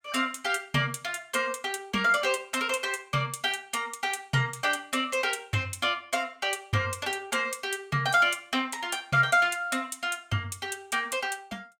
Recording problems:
none

